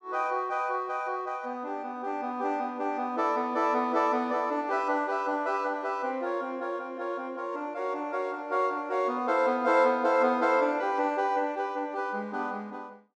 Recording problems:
none

